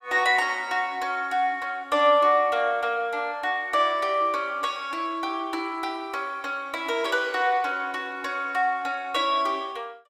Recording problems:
none

